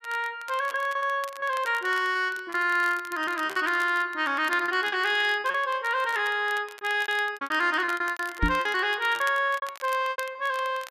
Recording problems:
crackle; vinyl, SNR 20 dB
lost packets; 14% of the sound replaced, filled with repeated pitch periods
microphone thump; at 8.5 s; peak +3 dB vs average level

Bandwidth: 14.5 kHz